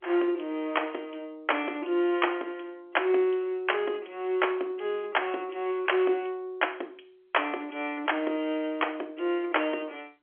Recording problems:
phone line; 260 Hz to 3.3 kHz, G.711

